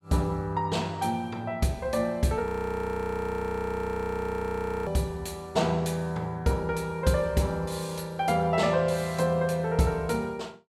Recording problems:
frozen audio; at 2.5 s for 2.5 s

